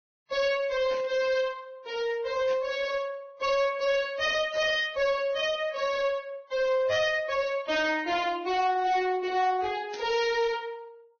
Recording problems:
codec artefacts; Vorbis, log-spectral distance 2 dB, nothing above 6.2 kHz
distortion; hard clipping, uneven, signal-to-distortion ratio 9 dB
static burst; 4 times, first at 1 s; peak -9 dB vs average level

